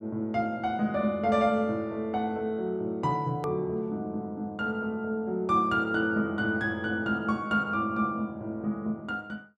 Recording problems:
edit click; at 3.5 s

